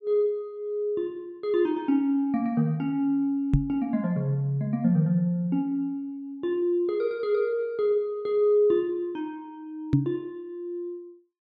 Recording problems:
knock on the microphone; at 3.5 s and at 10 s; peak +8 dB vs average level

